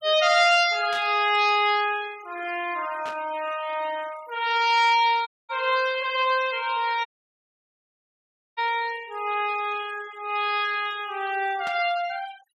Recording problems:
denoising artefacts; signal-to-artefact ratio 18 dB
static burst; at 1 s, at 3 s and at 12 s; peak -10 dB vs average level
audio cutting out; at 5.5 s and at 7 s for 1.5 s

